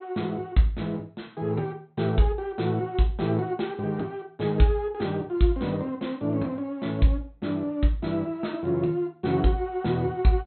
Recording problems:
treble missing; nothing above 4.2 kHz

